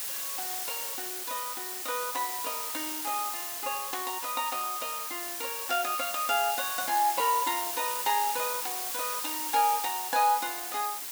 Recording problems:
hiss; slope +1 dB per octave, SNR 1 dB

